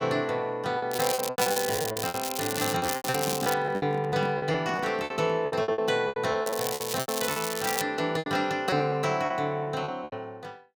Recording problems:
packet loss; 16% of the sound replaced, filled with repeated pitch periods
crackling; from 1 to 3.5 s and from 6.5 to 8 s; loose cable, SNR 4 dB
handling noise; from 2.5 to 5.5 s; peak -5 dB vs average level

